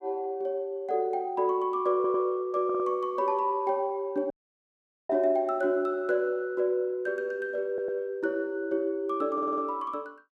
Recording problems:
stutter; 4 times, first at 2 s
dropout; at 4.5 s for 1 s

